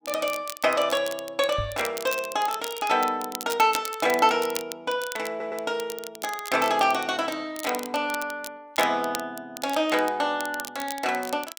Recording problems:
crackling; vinyl, SNR 12 dB
knock on the microphone; at 1.5 s; peak -3 dB vs average level
audio stuttering; at 5.5 s

